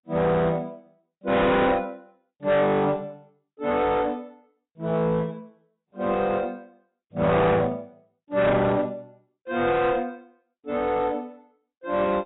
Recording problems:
codec artefacts; AAC, log-spectral distance 2 dB, nothing above 3.8 kHz
distortion; hard clipping, uneven, signal-to-distortion ratio 7 dB

